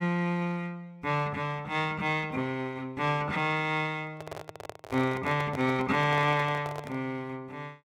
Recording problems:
handling noise; from 4 to 7 s; peak -6 dB vs average level

